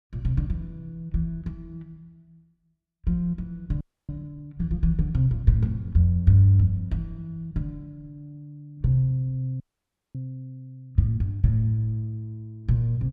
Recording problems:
audio freezing; at 4 s and at 9.5 s for 0.5 s

